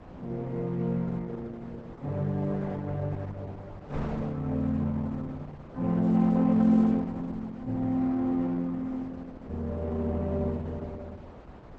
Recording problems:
codec artefacts; Opus, log-spectral distance 2 dB, nothing above 7.8 kHz
wind on the microphone; below 690 Hz, SNR 17 dB

